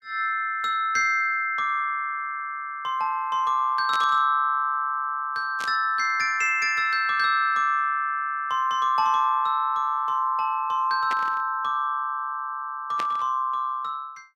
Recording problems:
static burst; 4 times, first at 4 s; peak -5 dB vs average level

